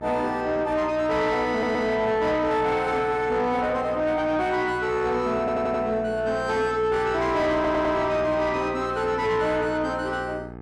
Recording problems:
distortion; soft clipping, signal-to-distortion ratio 10 dB
hum; 60 Hz, harmonics up to 2 kHz, SNR 16 dB
stutter; at 1.5 s, at 5.5 s and at 7.5 s

